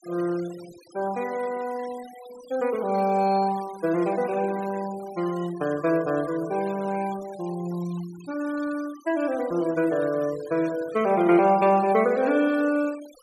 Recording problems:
denoising artefacts; signal-to-artefact ratio 20 dB

